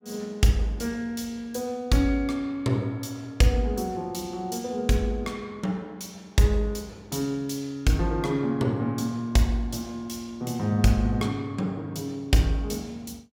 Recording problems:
none

